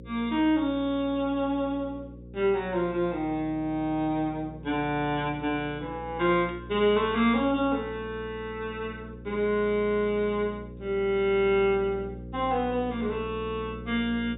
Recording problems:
treble missing; nothing above 4 kHz
hum; 60 Hz, harmonics up to 540 Hz, SNR 15 dB
static burst; at 6.5 s; peak -17 dB vs average level

